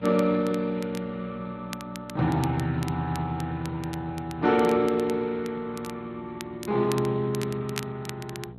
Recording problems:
lossy codec; MP3, then Speex, log-spectral distance 3 dB
mains hum; 60 Hz, harmonics up to 900 Hz, SNR 19 dB
crackle; vinyl, SNR 16 dB

